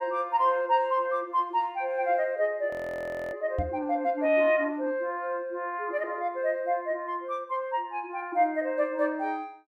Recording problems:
frozen audio; at 2.5 s for 0.5 s
knock on the microphone; at 3.5 s; peak +1 dB vs average level

